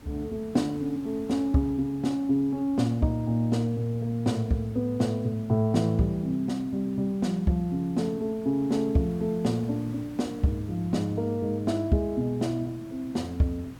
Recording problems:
background hiss; SNR 19 dB

